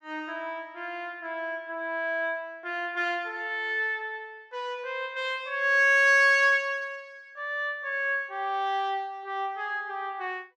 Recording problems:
none

